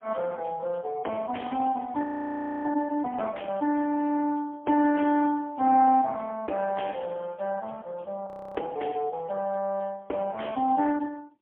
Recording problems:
telephone audio; 240 Hz to 3.3 kHz, AMR-NB, then MP3
audio freezing; at 2 s for 0.5 s and at 8.5 s

